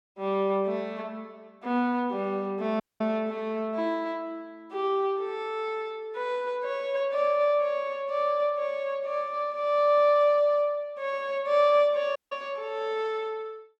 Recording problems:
dropout; at 3 s and at 12 s

